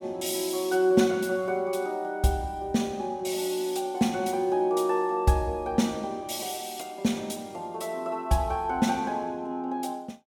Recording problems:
none

